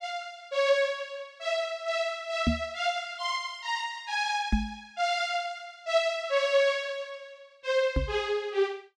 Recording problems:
knock on the microphone; at 2.5 s, at 4.5 s and at 8 s; peak +7 dB vs average level

